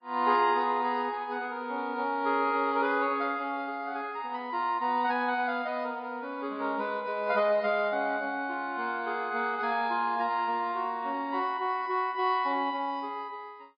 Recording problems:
lossy compression; MP3, log-spectral distance 2 dB

